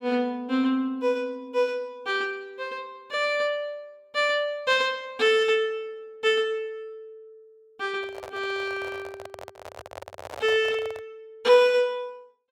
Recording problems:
handling noise; from 8 to 11 s; peak -9 dB vs average level

